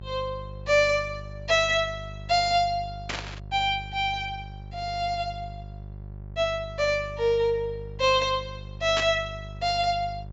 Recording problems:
treble cut off; nothing above 8 kHz
electrical hum; 50 Hz, harmonics up to 600 Hz, SNR 15 dB
burst of static; at 3 s and at 9 s; peak -1 dB vs average level

